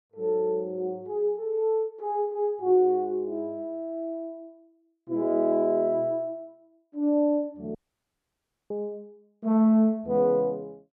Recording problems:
dropout; at 8 s for 1 s

